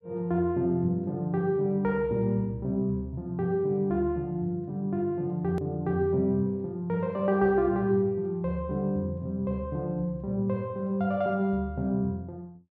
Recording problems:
click at an edit; at 5.5 s

